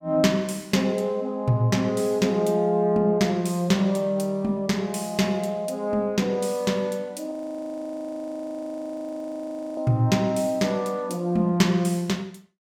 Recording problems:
audio freezing; at 7.5 s for 2.5 s

